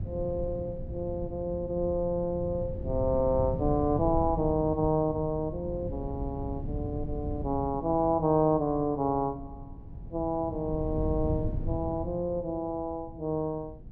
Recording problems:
wind on the microphone; below 150 Hz, SNR 8 dB

